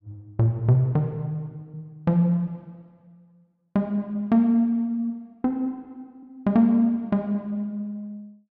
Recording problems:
none

